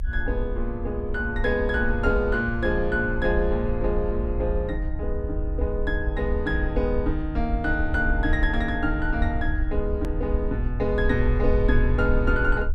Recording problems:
low-frequency rumble; below 64 Hz, SNR 3 dB
click at an edit; at 10 s

